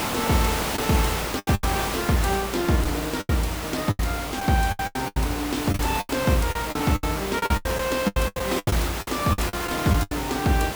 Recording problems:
hiss; slope -4 dB per octave, SNR 4 dB
packet loss; 14% of the sound replaced, filled with the last packet

